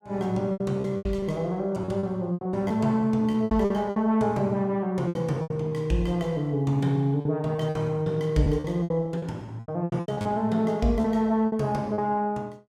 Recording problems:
packet loss; 13% of the sound replaced, filled with repeated pitch periods

